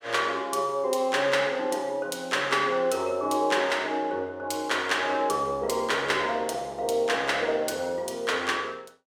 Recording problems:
none

